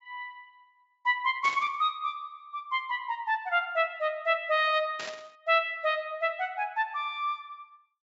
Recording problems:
treble missing; nothing above 8 kHz
static burst; at 1.5 s and at 5 s; peak -6 dB vs average level

